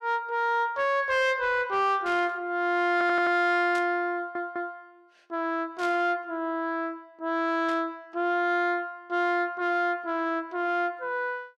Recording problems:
distorted audio; soft clipping, signal-to-distortion ratio 10 dB
burst of static; 4 times, first at 2 s; peak -10 dB vs average level
stutter; at 3 s and at 4 s

